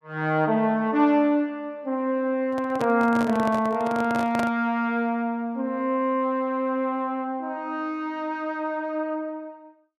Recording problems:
microphone handling noise; from 2.5 to 4.5 s; peak -2 dB vs average level

